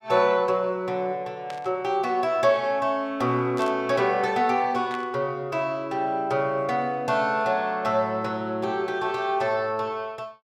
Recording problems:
burst of static; at 1.5 s, at 3.5 s and at 5 s; peak -10 dB vs average level

